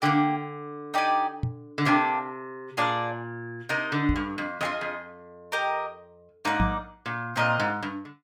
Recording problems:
knock on the microphone; at 1.5 s, at 4 s and at 6.5 s; peak +5 dB vs average level

